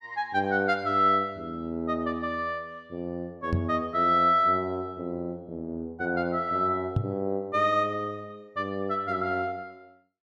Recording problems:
microphone bump; at 3.5 s and at 7 s; peak +5 dB vs average level

